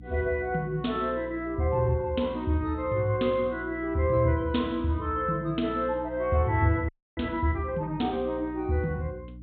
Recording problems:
treble missing; nothing above 4 kHz
hum; 60 Hz, harmonics up to 300 Hz, SNR 17 dB
audio freezing; at 7 s

